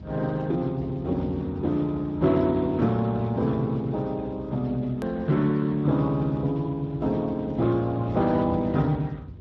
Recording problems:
lossy codec; Speex, log-spectral distance 3 dB, nothing above 13.1 kHz
low-frequency rumble; below 180 Hz, SNR 16 dB
edit click; at 5 s

